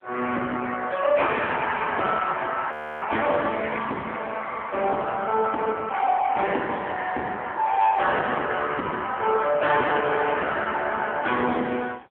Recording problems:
telephone audio; 320 Hz to 3.4 kHz, AMR-NB
distorted audio; soft clipping, signal-to-distortion ratio 12 dB
frozen audio; at 2.5 s

